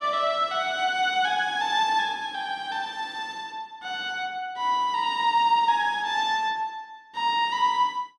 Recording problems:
none

